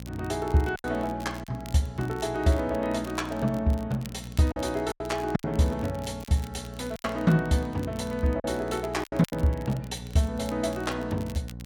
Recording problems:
mains hum; 60 Hz, harmonics up to 780 Hz, SNR 13 dB
crackling; vinyl, SNR 21 dB
packet loss; 6% of the sound replaced, filled with silence

